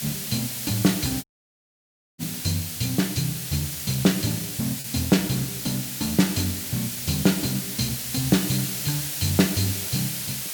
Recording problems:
hiss; SNR 3 dB
lost packets; 0.8% of the sound replaced, filled with repeated pitch periods
audio cutting out; at 1 s for 1 s

